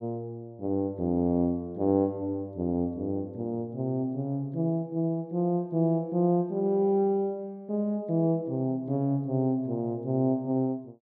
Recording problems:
none

